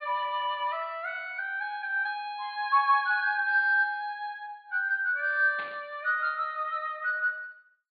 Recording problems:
treble missing; nothing above 4.6 kHz
static burst; at 5.5 s; peak -11 dB vs average level

